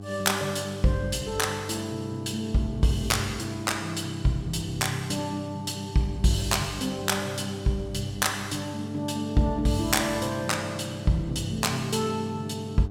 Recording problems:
hum; 50 Hz, harmonics up to 800 Hz, SNR 11 dB

